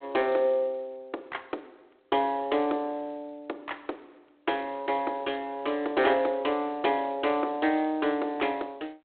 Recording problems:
telephone audio; 280 Hz to 3.4 kHz, G.726

